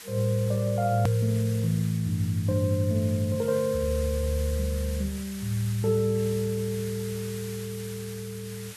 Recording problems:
lossy compression; Vorbis, log-spectral distance 5 dB, nothing above 13.1 kHz
hiss; SNR 15 dB
click at an edit; at 1 s

